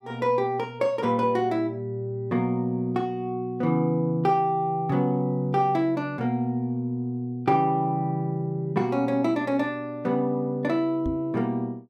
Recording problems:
microphone thump; at 11 s; peak -2 dB vs average level

